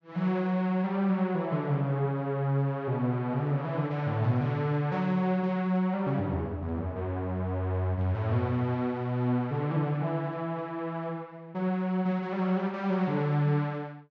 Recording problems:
none

